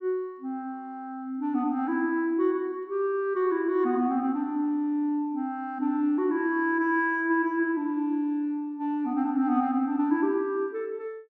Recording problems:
none

